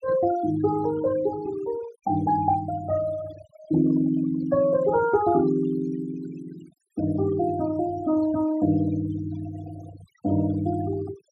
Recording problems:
noise reduction artefacts; signal-to-artefact ratio 15 dB

